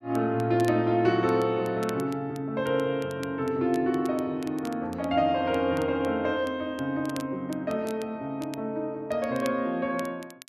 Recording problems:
crackling; vinyl, SNR 22 dB

